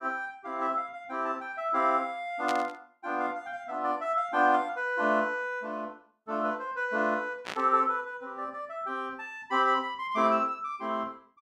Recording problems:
burst of static; at 2.5 s and at 7.5 s; peak -3 dB vs average level

